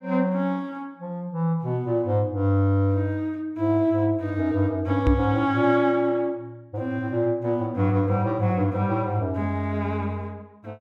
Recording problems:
knock on the microphone; at 5 s; peak +6 dB vs average level

